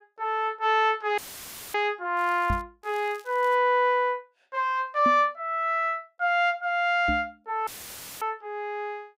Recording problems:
dropout; at 1 s for 0.5 s and at 7.5 s for 0.5 s; filled with static
crackle; at 2 s and at 3 s; loose cable, SNR 28 dB
microphone thump; at 2.5 s, at 5 s and at 7 s; peak 0 dB vs average level

